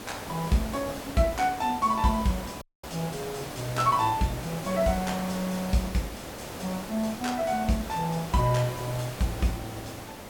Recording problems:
hiss; slope -5 dB per octave, SNR 9 dB
dropout; at 2.5 s

